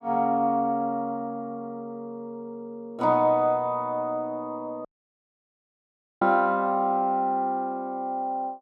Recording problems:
dropout; at 5 s for 1.5 s

